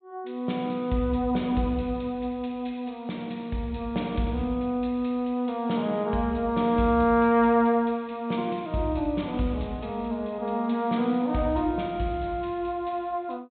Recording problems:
treble missing; nothing above 4 kHz

